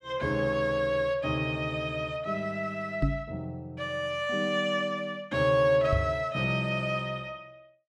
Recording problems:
microphone bump; at 3 s and at 6 s; peak +5 dB vs average level

